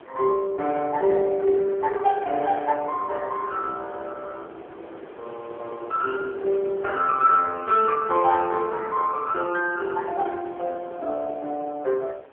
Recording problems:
phone line; 300 Hz to 2.6 kHz, AMR-NB
wind noise; below 800 Hz, SNR 21 dB

